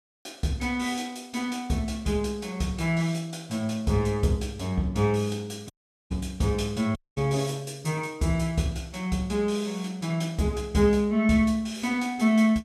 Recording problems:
audio cutting out; at 5.5 s and at 7 s

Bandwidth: 14 kHz